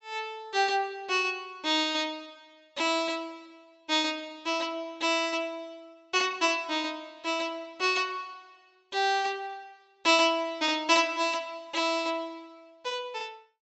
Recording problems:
treble missing; nothing above 7.8 kHz

